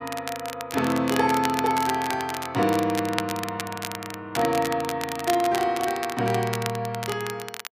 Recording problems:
crackling; vinyl, SNR 9 dB

